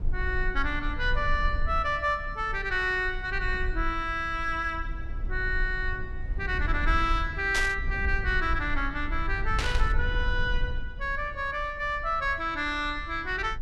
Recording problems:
rumble; below 58 Hz, strongest tone 22 Hz, SNR 6 dB
burst of static; at 7.5 s and at 9.5 s; peak +2 dB vs average level

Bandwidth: 12.5 kHz